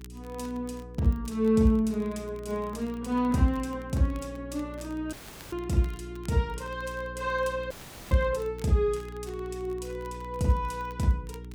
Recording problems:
hum; 60 Hz, harmonics up to 420 Hz, SNR 14 dB
crackling; vinyl, SNR 27 dB
audio cutting out; at 5 s and at 7.5 s

